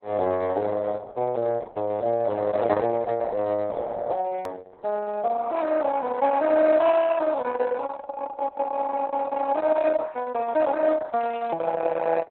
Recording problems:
codec artefacts; Speex, then Opus, log-spectral distance 3 dB
hard cut with a click; at 4.5 s

